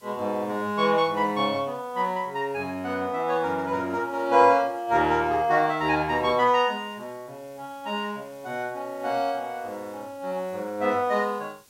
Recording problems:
hiss; SNR 30 dB

